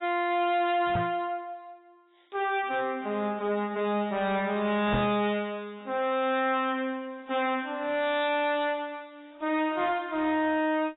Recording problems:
lossy compression; AAC, log-spectral distance 3 dB, nothing above 3.8 kHz
distortion; hard clipping, signal-to-distortion ratio 10 dB
microphone bump; at 1 s and at 5 s; peak +3 dB vs average level

